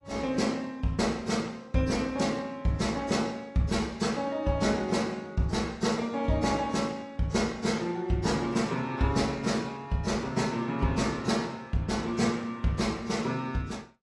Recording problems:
codec artefacts; AAC, log-spectral distance 3 dB, nothing above 10.7 kHz

